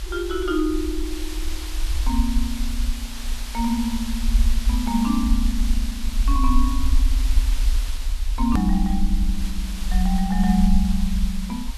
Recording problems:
hiss; slope +1 dB per octave, SNR 11 dB
low-frequency rumble; below 52 Hz, SNR 1 dB
hard cut with a click; at 8.5 s

